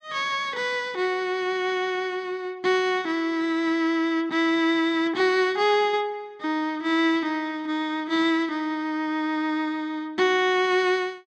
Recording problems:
none

